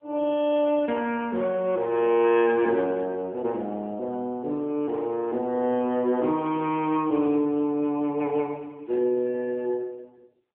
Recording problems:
telephone audio; 190 Hz to 3.2 kHz, AMR-NB

